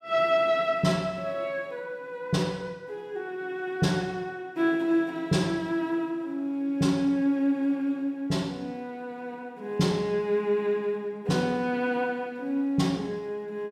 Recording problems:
none

